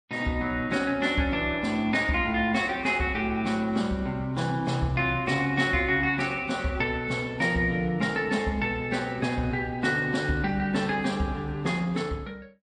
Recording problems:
codec artefacts; MP3, log-spectral distance 2 dB, nothing above 9 kHz

